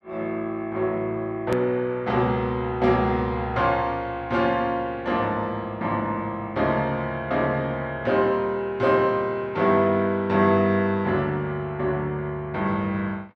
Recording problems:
click at an edit; at 1.5 s

